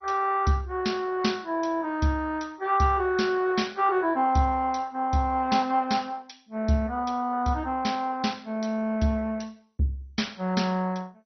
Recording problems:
lossy compression; MP2, log-spectral distance 4 dB, nothing above 6 kHz

